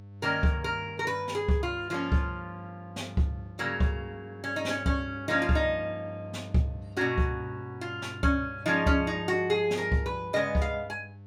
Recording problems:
electrical hum; 50 Hz, harmonics up to 700 Hz, SNR 16 dB

